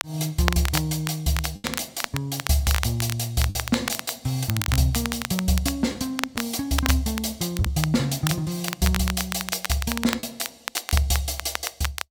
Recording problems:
crackle; vinyl, SNR 6 dB
packet loss; 3% of the sound replaced, filled with the last packet

